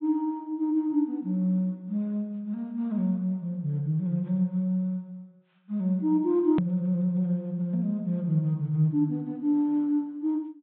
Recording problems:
treble cut off; nothing above 4 kHz
click at an edit; at 6.5 s

